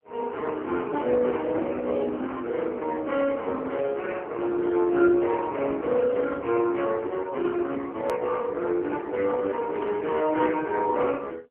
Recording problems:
phone line; 240 Hz to 3.1 kHz, AMR-NB
hard cut with a click; at 8 s

